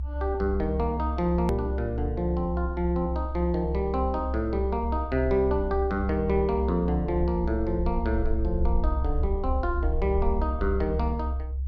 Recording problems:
rumble; below 68 Hz, strongest tone 66 Hz, SNR 3 dB
edit click; at 1.5 s

